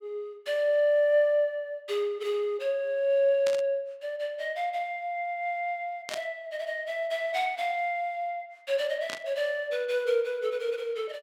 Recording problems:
burst of static; at 3.5 s, at 6 s and at 9 s; peak -3 dB vs average level

